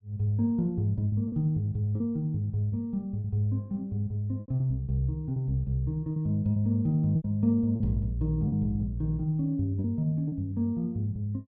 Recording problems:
packet loss; 6% of the sound replaced, filled with repeated pitch periods

